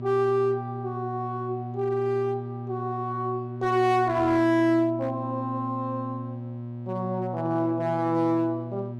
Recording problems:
distortion; hard clipping, uneven, signal-to-distortion ratio 11 dB
electrical hum; 60 Hz, harmonics up to 720 Hz, SNR 9 dB

